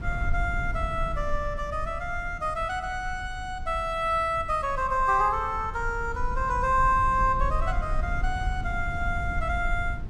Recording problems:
low-frequency rumble; below 66 Hz, SNR 7 dB

